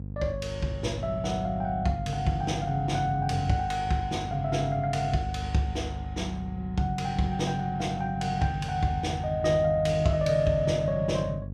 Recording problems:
hum; 50 Hz, harmonics up to 500 Hz, SNR 10 dB

